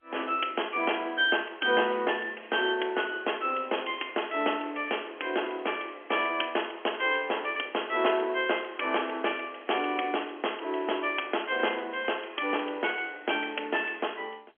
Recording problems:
telephone audio; 260 Hz to 3.3 kHz, G.711

